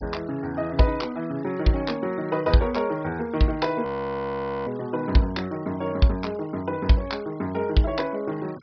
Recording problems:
low-pass filter; nothing above 5.5 kHz
denoising artefacts; signal-to-artefact ratio 24 dB
audio freezing; at 4 s for 1 s

